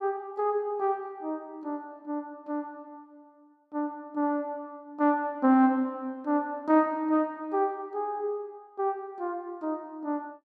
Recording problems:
none

